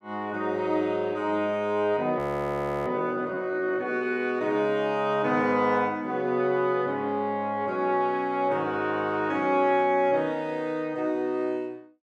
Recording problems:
frozen audio; at 2 s for 0.5 s

